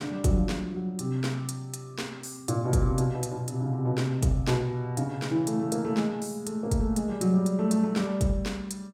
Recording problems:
none

